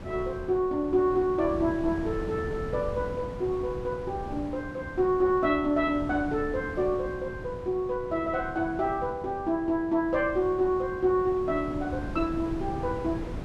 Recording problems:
wind on the microphone; below 340 Hz, SNR 12 dB

